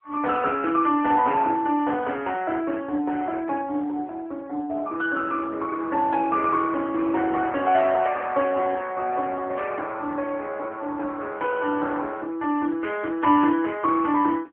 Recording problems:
phone line; 240 Hz to 3.3 kHz, AMR-NB

